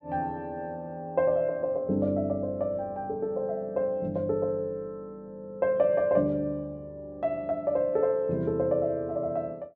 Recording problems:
none

